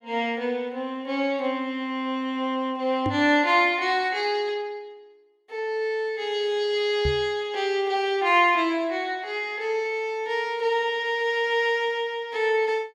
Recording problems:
microphone thump; at 3 s and at 7 s; peak 0 dB vs average level

